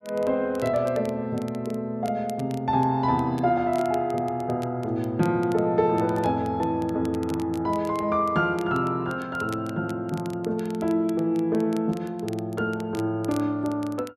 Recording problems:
crackle; vinyl, SNR 23 dB

